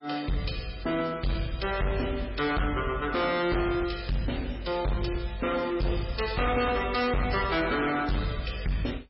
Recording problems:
lossy codec; MP3, log-spectral distance 6 dB, nothing above 5.3 kHz
distortion; hard clipping, signal-to-distortion ratio 7 dB

